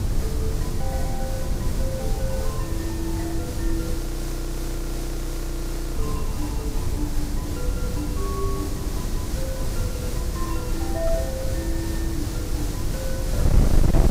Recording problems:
distortion; hard clipping, signal-to-distortion ratio 11 dB
background hiss; SNR 2 dB
wind noise; below 94 Hz, SNR -6 dB
audio freezing; at 4 s for 2 s

